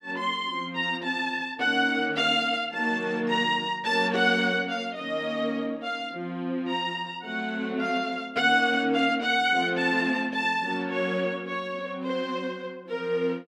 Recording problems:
none

